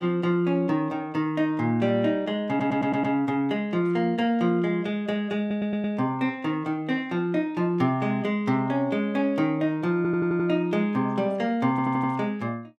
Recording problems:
audio stuttering; 4 times, first at 2.5 s

